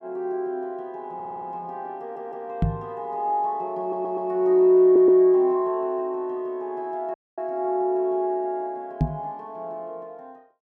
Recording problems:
stutter; 4 times, first at 1 s
microphone bump; at 2.5 s and at 9 s; peak +5 dB vs average level
dropout; at 7 s

